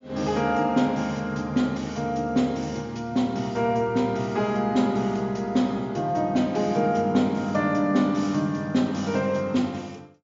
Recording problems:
treble missing; nothing above 7.3 kHz

